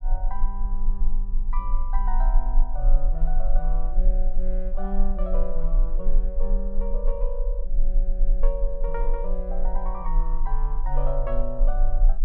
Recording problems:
rumble; below 32 Hz, strongest tone 18 Hz, SNR -8 dB

